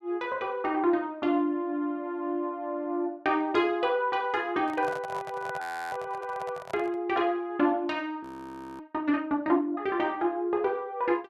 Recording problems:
microphone handling noise; from 4.5 to 7 s; peak -6 dB vs average level
audio freezing; at 5.5 s and at 8 s for 0.5 s

